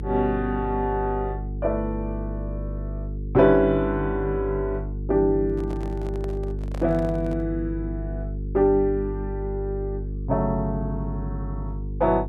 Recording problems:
electrical hum; 50 Hz, harmonics up to 450 Hz, SNR 6 dB
handling noise; from 5.5 to 7.5 s; peak -9 dB vs average level

